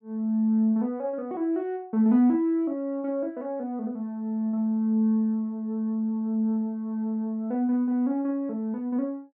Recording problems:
none

